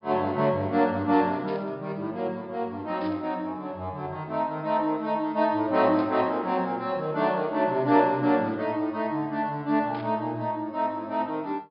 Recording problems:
treble cut off; nothing above 5.5 kHz
burst of static; 4 times, first at 1.5 s; peak -15 dB vs average level

